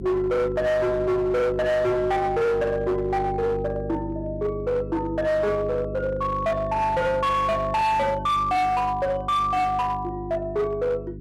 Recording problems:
distorted audio; hard clipping, signal-to-distortion ratio 10 dB
electrical hum; 50 Hz, harmonics up to 400 Hz, SNR 11 dB

